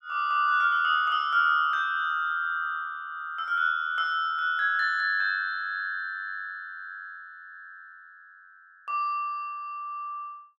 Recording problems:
none

